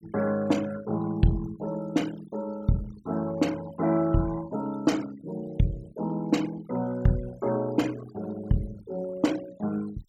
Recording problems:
denoising artefacts; signal-to-artefact ratio 17 dB

